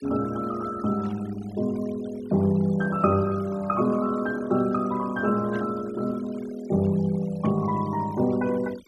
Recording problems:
noise reduction artefacts; signal-to-artefact ratio 20 dB
static burst; at 1 s, at 5.5 s and at 7.5 s; peak -14 dB vs average level

